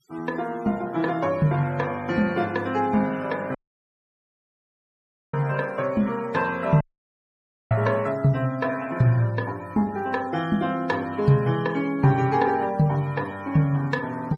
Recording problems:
denoising artefacts; signal-to-artefact ratio 23 dB
dropout; at 3.5 s for 2 s and at 7 s for 1 s

